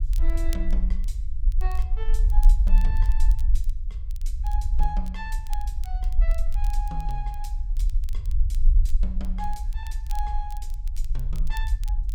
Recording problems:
rumble; below 42 Hz, SNR -11 dB
crackling; vinyl, SNR 14 dB

